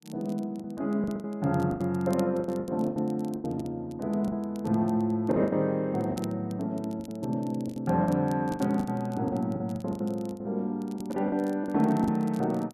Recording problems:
crackle; vinyl, SNR 25 dB
packet loss; 13% of the sound replaced, filled with the last packet

